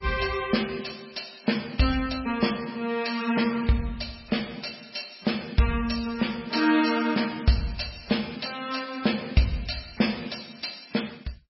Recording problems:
lossy compression; MP3, log-spectral distance 10 dB, nothing above 5.5 kHz

